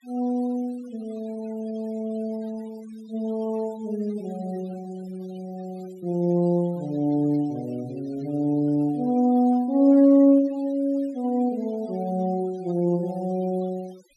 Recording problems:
noise reduction artefacts; signal-to-artefact ratio 27 dB

